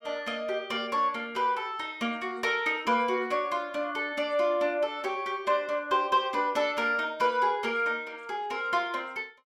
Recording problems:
none

